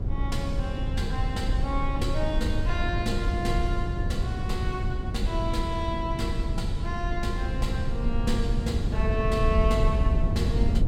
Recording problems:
hum; 60 Hz, harmonics up to 900 Hz, SNR 19 dB
rumble; below 100 Hz, SNR -3 dB
wind on the microphone; below 270 Hz, SNR 15 dB

